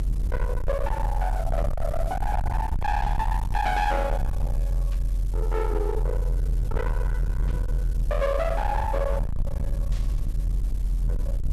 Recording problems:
distorted audio; hard clipping, signal-to-distortion ratio 6 dB
hiss; slope +1 dB per octave, SNR 22 dB
low-frequency rumble; below 66 Hz, strongest tone 42 Hz, SNR 0 dB
lost packets; 0.9% of the sound replaced, filled with the last packet
burst of static; 4 times, first at 3 s; peak -14 dB vs average level

